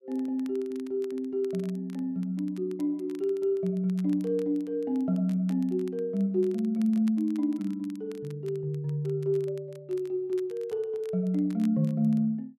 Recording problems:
crackle; vinyl, SNR 28 dB

